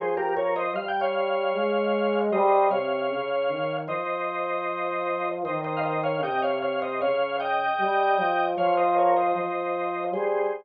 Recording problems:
none

